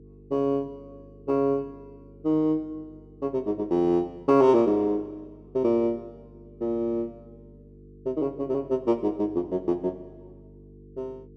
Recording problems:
hum; 50 Hz, harmonics up to 450 Hz, SNR 24 dB

